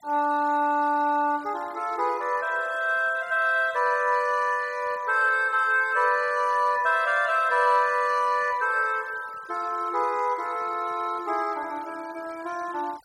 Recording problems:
denoising artefacts; signal-to-artefact ratio 24 dB

